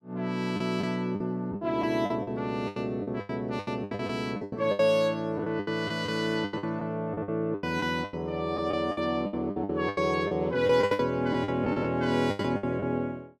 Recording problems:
packet loss; 16% of the sound replaced, filled with the last packet

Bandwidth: 14.5 kHz